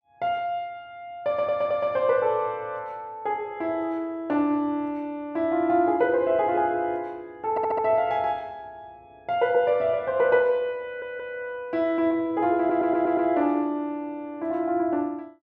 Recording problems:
stutter; 4 times, first at 1.5 s

